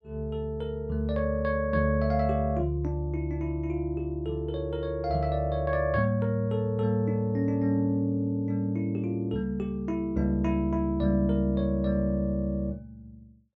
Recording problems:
none

